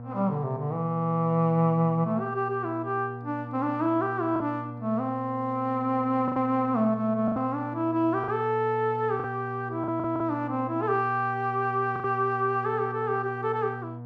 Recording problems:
hum; 60 Hz, harmonics up to 960 Hz, SNR 12 dB
packet loss; 3% of the sound replaced, filled with the last packet

